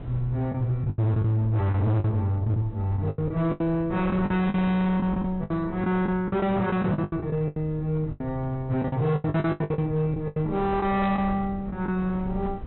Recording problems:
low-pass filter; nothing above 4 kHz
distortion; hard clipping, uneven, signal-to-distortion ratio 8 dB
rumble; below 160 Hz, SNR 16 dB
packet loss; 14% of the sound replaced, filled with the last packet
static burst; at 11 s; peak -12 dB vs average level

